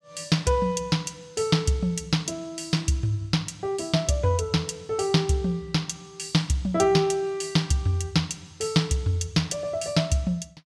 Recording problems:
none

